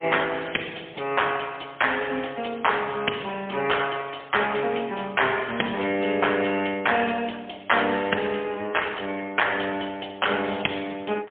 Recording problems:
telephone audio; 240 Hz to 3.3 kHz, AMR-NB, then MP3

